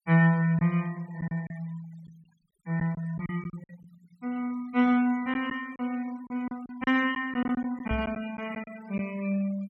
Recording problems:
noise reduction artefacts; signal-to-artefact ratio 22 dB
lost packets; 7% of the sound replaced, filled with silence
microphone thump; at 8 s; peak -1 dB vs average level

